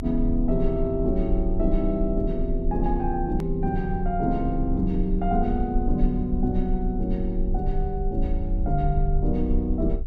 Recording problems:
low-frequency rumble; below 44 Hz, strongest tone 24 Hz, SNR 4 dB
hard cut with a click; at 3.5 s

